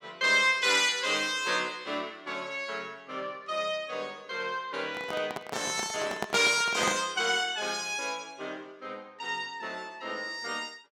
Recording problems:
handling noise; from 5 to 7 s; peak +1 dB vs average level

